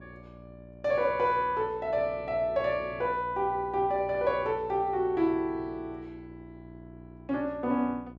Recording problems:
electrical hum; 60 Hz, harmonics up to 1.1 kHz, SNR 20 dB

